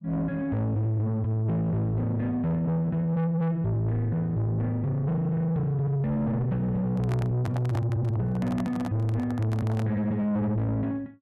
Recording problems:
distorted audio; soft clipping, signal-to-distortion ratio 8 dB
microphone handling noise; from 7 to 10 s; peak -4 dB vs average level

